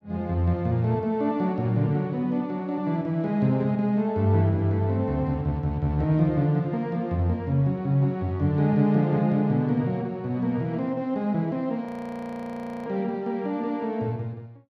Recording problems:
audio freezing; at 12 s for 1 s

